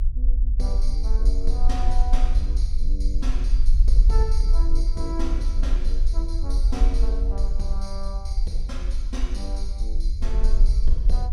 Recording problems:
low-frequency rumble; below 44 Hz, strongest tone 20 Hz, SNR -11 dB

